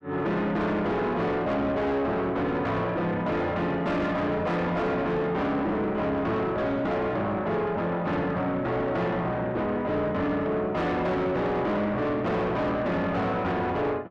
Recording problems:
distorted audio; soft clipping, signal-to-distortion ratio 7 dB

